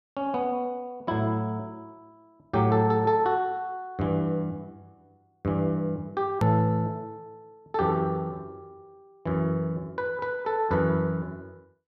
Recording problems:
hard cut with a click; at 6.5 s

